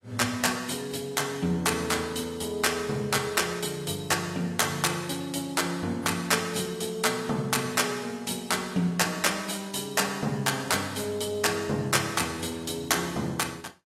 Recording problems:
lossy codec; AAC, log-spectral distance 4 dB

